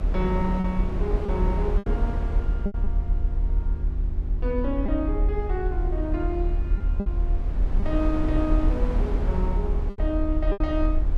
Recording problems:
hum; 50 Hz, harmonics up to 400 Hz, SNR 7 dB
rumble; below 46 Hz, strongest tone 36 Hz, SNR -2 dB
wind on the microphone; below 440 Hz, SNR 6 dB
lost packets; 5% of the sound replaced, filled with repeated pitch periods

